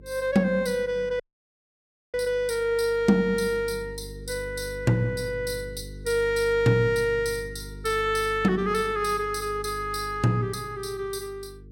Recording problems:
electrical hum; 50 Hz, harmonics up to 450 Hz, SNR 17 dB
audio cutting out; at 1 s for 1 s

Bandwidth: 17 kHz